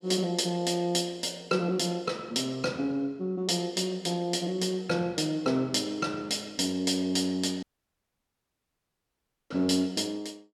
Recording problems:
dropout; at 7.5 s for 2 s

